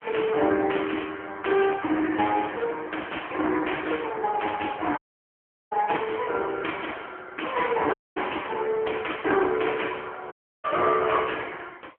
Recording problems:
phone line; 280 Hz to 3.3 kHz, AMR-NB
audio cutting out; at 5 s for 0.5 s, at 8 s and at 10 s

